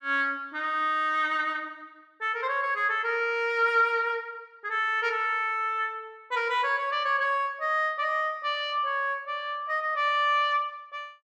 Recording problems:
none

